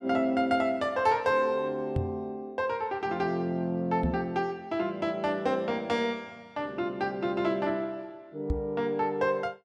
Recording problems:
knock on the microphone; at 2 s, at 4 s and at 8.5 s; peak +3 dB vs average level

